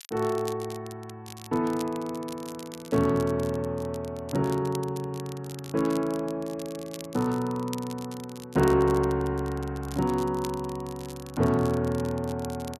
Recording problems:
crackling; vinyl, SNR 18 dB

